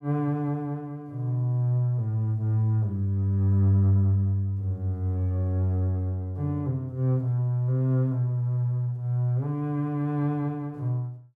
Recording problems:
none

